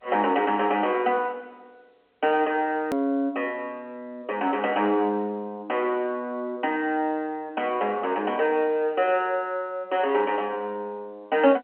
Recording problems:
telephone audio; 240 Hz to 3.7 kHz, G.711
click at an edit; at 3 s

